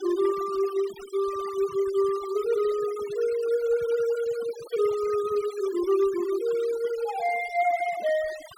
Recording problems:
noise reduction artefacts; signal-to-artefact ratio 17 dB

